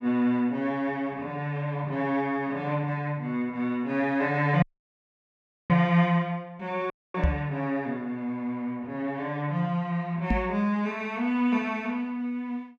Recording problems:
dropout; at 4.5 s for 1 s and at 7 s
microphone bump; at 7 s and at 10 s; peak +6 dB vs average level

